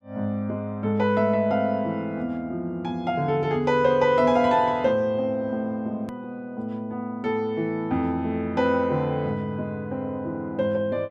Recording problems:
click at an edit; at 6 s

